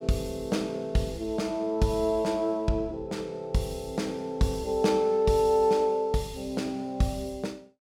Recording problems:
none

